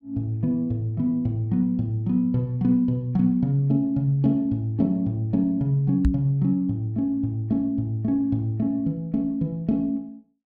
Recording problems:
microphone bump; at 6 s; peak +5 dB vs average level

